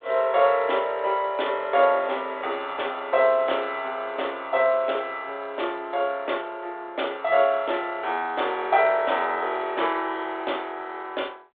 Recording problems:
telephone audio; 340 Hz to 3.6 kHz, G.726

